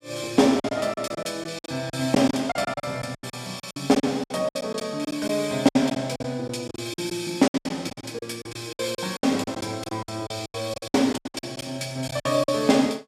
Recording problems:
packet loss; 17% of the sound replaced, filled with silence

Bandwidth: 14.5 kHz